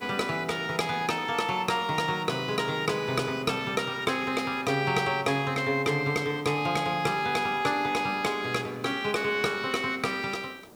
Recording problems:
hiss; SNR 25 dB

